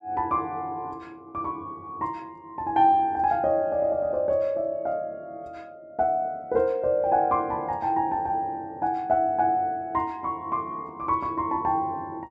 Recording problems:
none

